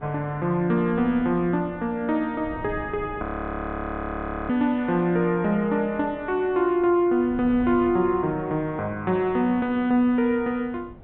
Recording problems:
treble cut off; nothing above 4 kHz
wind noise; below 330 Hz, SNR 19 dB
audio freezing; at 3 s for 1.5 s

